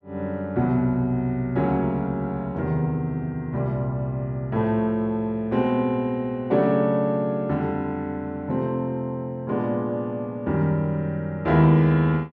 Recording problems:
none

